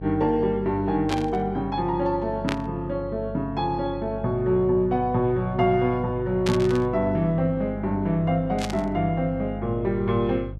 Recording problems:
electrical hum; 50 Hz, harmonics up to 500 Hz, SNR 13 dB
burst of static; 4 times, first at 1 s; peak -2 dB vs average level

